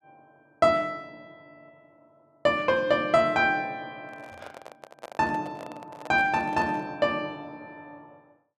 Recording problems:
handling noise; from 4 to 7 s; peak -11 dB vs average level

